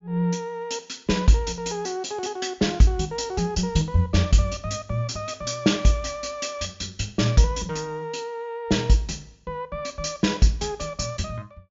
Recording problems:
treble cut off; nothing above 7.2 kHz

